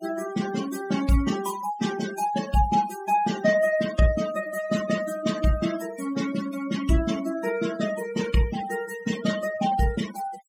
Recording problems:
noise reduction artefacts; signal-to-artefact ratio 11 dB

